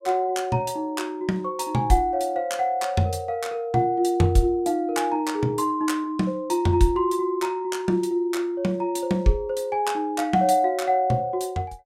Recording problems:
none

